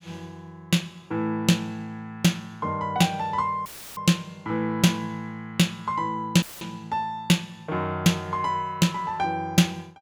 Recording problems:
audio cutting out; at 3.5 s and at 6.5 s; filled with static

